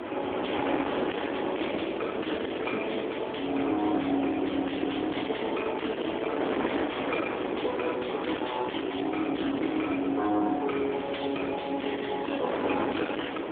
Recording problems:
phone line; 240 Hz to 3.6 kHz, AMR-NB
distorted audio; soft clipping, signal-to-distortion ratio 7 dB
wind noise; below 1.1 kHz, SNR 4 dB

